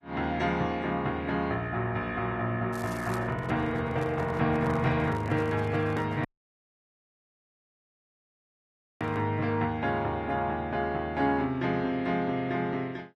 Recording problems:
codec artefacts; AAC, log-spectral distance 2 dB
crackling; at 2.5 s; loose cable, SNR 21 dB
handling noise; from 3 to 9.5 s; peak -7 dB vs average level
audio cutting out; at 6.5 s for 3 s

